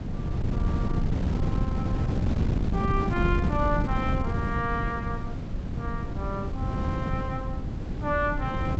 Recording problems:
treble missing; nothing above 7.8 kHz
wind on the microphone; below 200 Hz, SNR -3 dB

